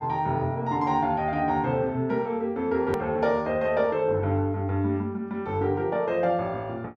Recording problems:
edit click; at 3 s

